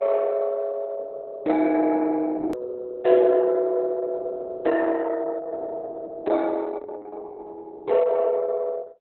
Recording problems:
lossy compression; Opus, log-spectral distance 4 dB
hard cut with a click; at 2.5 s

